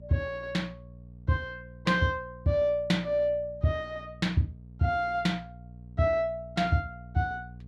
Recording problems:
mains hum; 60 Hz, harmonics up to 480 Hz, SNR 18 dB

